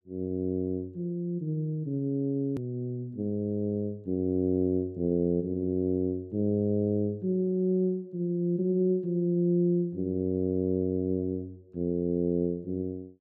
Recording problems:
edit click; at 2.5 s

